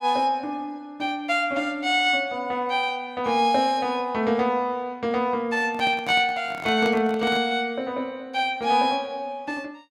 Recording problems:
microphone handling noise; from 5.5 to 7.5 s; peak -6 dB vs average level

